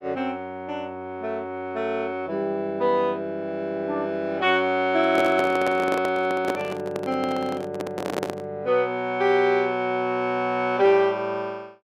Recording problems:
microphone handling noise; from 5 to 8.5 s; peak +1 dB vs average level

